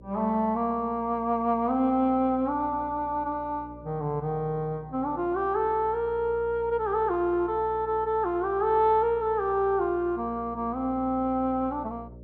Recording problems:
electrical hum; 60 Hz, harmonics up to 600 Hz, SNR 20 dB

